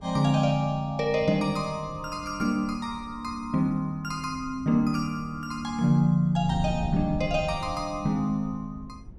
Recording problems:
wind on the microphone; below 150 Hz, SNR 15 dB

